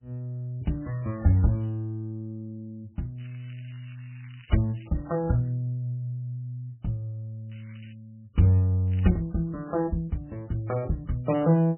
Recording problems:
codec artefacts; MP3, log-spectral distance 5 dB, nothing above 2.9 kHz
crackling; 4 times, first at 0.5 s; loose cable, SNR 26 dB

